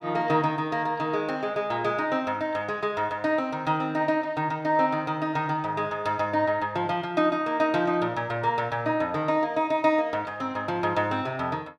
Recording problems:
none

